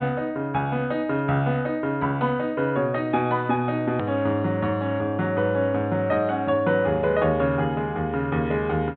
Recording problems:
treble cut off; nothing above 4 kHz
edit click; at 4 s

